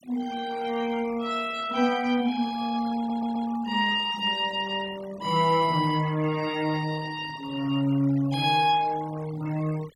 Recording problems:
denoising artefacts; signal-to-artefact ratio 19 dB
audio stuttering; at 3 s

